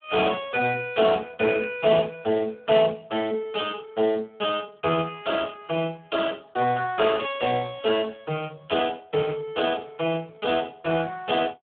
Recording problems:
telephone audio; 170 Hz to 2.9 kHz, Speex

